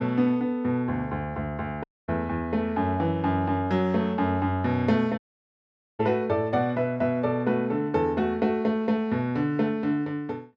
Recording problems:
dropout; at 2 s and at 5 s for 1 s

